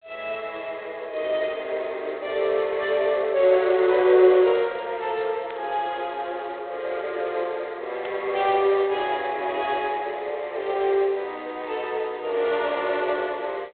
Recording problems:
telephone audio; 320 Hz to 3.9 kHz, G.726
static burst; at 5.5 s and at 8 s; peak -10 dB vs average level

